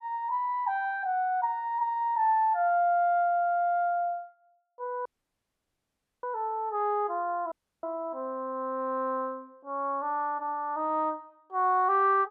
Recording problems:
audio cutting out; at 5 s for 1 s and at 7.5 s

